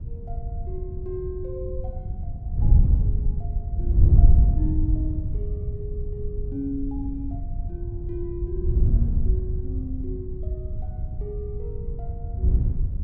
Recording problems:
wind noise; below 84 Hz, SNR -10 dB

